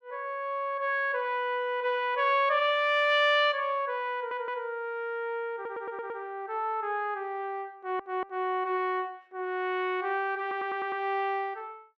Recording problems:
audio stuttering; 4 times, first at 4 s

